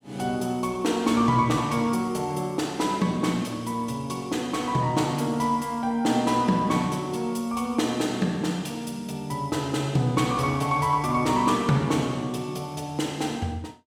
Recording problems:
none

